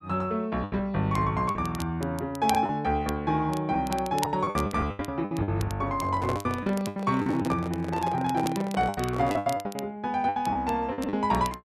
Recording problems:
crackle; vinyl, SNR 17 dB
packet loss; 13% of the sound replaced, filled with the last packet
handling noise; from 6 to 9.5 s; peak 0 dB vs average level

